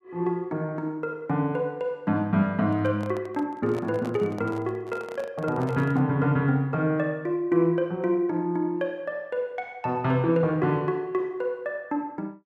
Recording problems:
handling noise; from 2.5 to 6 s; peak -9 dB vs average level

